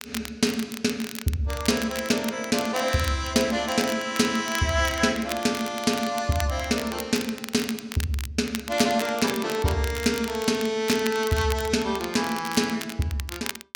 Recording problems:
crackling; vinyl, SNR 11 dB

